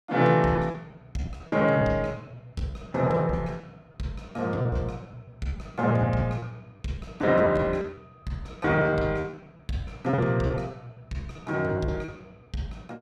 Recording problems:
lost packets; 15% of the sound replaced, filled with repeated pitch periods

